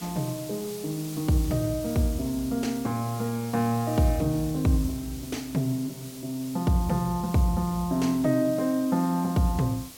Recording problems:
hiss; SNR 15 dB

